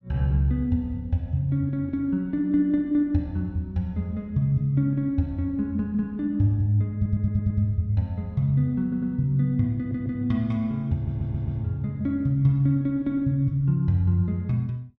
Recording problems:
audio stuttering; 4 times, first at 7 s

